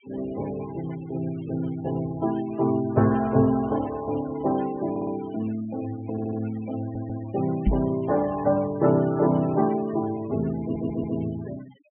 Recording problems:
treble cut off; nothing above 3.1 kHz
denoising artefacts; signal-to-artefact ratio 20 dB
stutter; 4 times, first at 5 s
microphone bump; at 7.5 s; peak +6 dB vs average level

